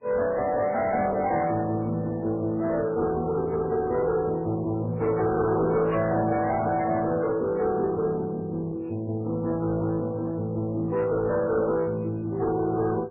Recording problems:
lossy compression; MP3, then MP3, log-spectral distance 2 dB
distortion; soft clipping, signal-to-distortion ratio 10 dB

